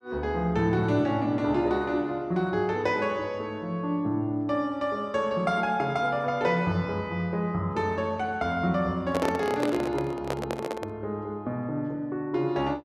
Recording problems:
microphone handling noise; from 9 to 11 s; peak +2 dB vs average level

